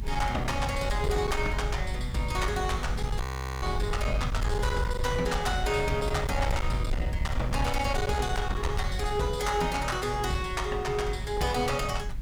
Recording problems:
distortion; hard clipping, signal-to-distortion ratio 11 dB
hiss; SNR 23 dB
rumble; below 96 Hz, strongest tone 48 Hz, SNR 6 dB
wind on the microphone; below 86 Hz, SNR 5 dB
frozen audio; at 3 s

